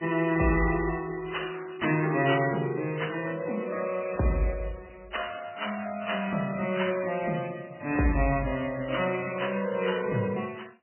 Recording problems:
codec artefacts; AAC, then MP3, log-spectral distance 7 dB, nothing above 3 kHz

